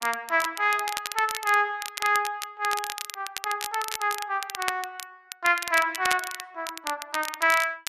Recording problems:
crackle; vinyl, SNR 8 dB

